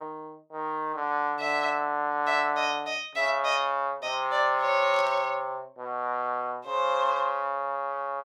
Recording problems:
burst of static; at 5 s; peak -10 dB vs average level

